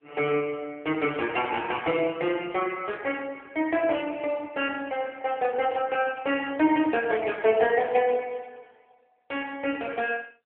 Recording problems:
telephone audio; 240 Hz to 3.2 kHz, AMR-NB

